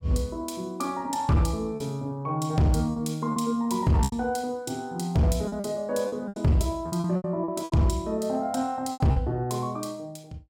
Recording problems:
distortion; hard clipping, signal-to-distortion ratio 10 dB
lost packets; 8% of the sound replaced, filled with repeated pitch periods

